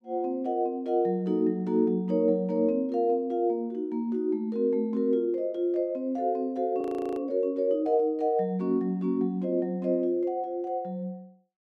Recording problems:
audio freezing; at 7 s

